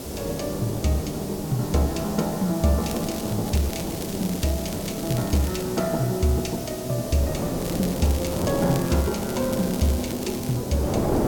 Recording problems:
background hiss; slope +3 dB per octave, SNR 12 dB
wind on the microphone; below 540 Hz, SNR 7 dB
crackle; at 3 s, from 3.5 to 5.5 s and from 7.5 to 11 s; loose cable, SNR 12 dB

